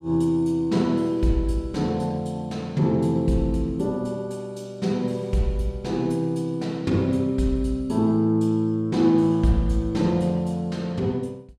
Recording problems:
none

